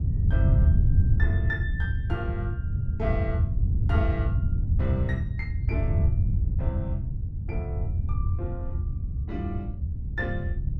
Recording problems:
wind noise; below 100 Hz, SNR -8 dB

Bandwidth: 12 kHz